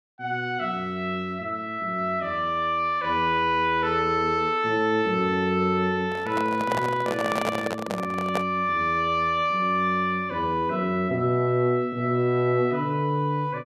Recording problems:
microphone handling noise; from 6 to 8.5 s; peak +1 dB vs average level

